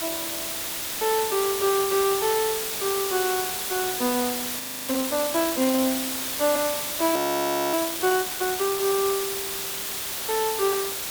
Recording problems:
hiss; slope 0 dB per octave, SNR 2 dB
frozen audio; at 4.5 s and at 7 s for 0.5 s

